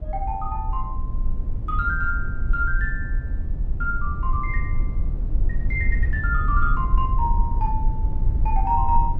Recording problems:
low-frequency rumble; below 60 Hz, SNR -1 dB

